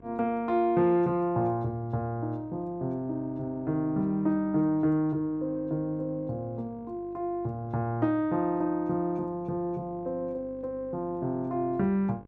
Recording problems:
electrical hum; 50 Hz, harmonics up to 1.1 kHz, SNR 24 dB

